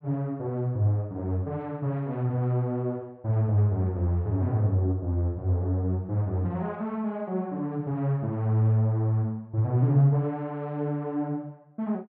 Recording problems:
none

